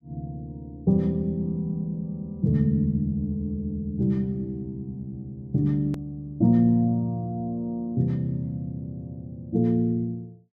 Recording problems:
hard cut with a click; at 6 s

